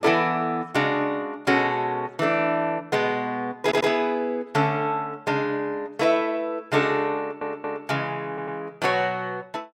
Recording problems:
stutter; at 3.5 s, at 7 s and at 8.5 s

